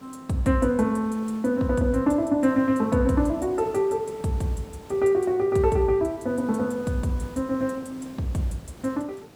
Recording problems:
hiss; slope -6 dB per octave, SNR 22 dB

